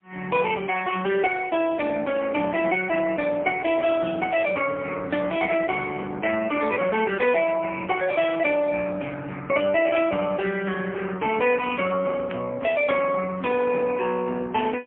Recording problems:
telephone audio; 260 Hz to 3 kHz, AMR-NB, then MP3

